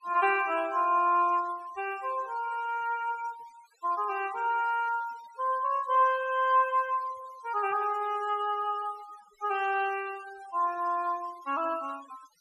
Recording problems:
denoising artefacts; signal-to-artefact ratio 21 dB

